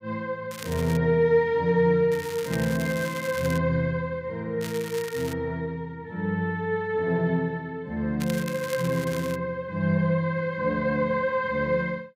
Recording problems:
crackle; 4 times, first at 0.5 s; loose cable, SNR 14 dB

